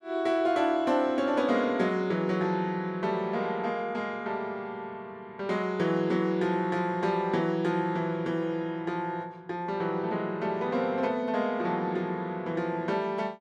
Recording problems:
none

